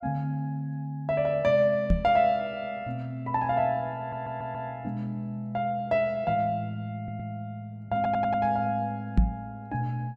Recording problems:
microphone thump; at 2 s and at 9 s; peak +9 dB vs average level
stutter; at 4 s, at 7 s and at 8 s

